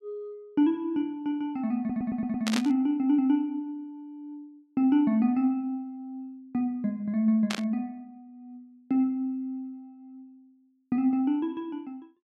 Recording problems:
stutter; at 2 s
static burst; at 2.5 s and at 7.5 s; peak +1 dB vs average level

